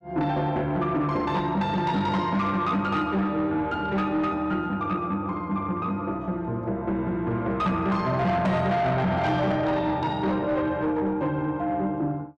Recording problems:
distorted audio; soft clipping, signal-to-distortion ratio 10 dB

